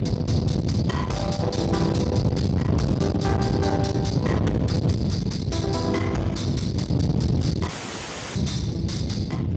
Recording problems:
lossy codec; Speex, log-spectral distance 5 dB, nothing above 7.3 kHz
distorted audio; soft clipping, signal-to-distortion ratio 6 dB
wind on the microphone; below 310 Hz, SNR -2 dB
dropout; at 7.5 s for 0.5 s

